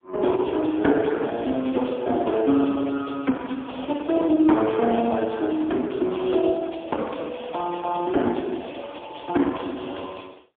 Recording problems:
telephone audio; 190 Hz to 3.6 kHz, AMR-NB, then MP3

